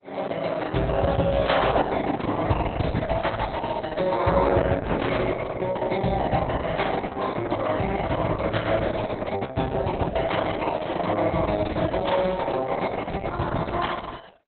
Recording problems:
lossy compression; Opus, log-spectral distance 6 dB, nothing above 4 kHz

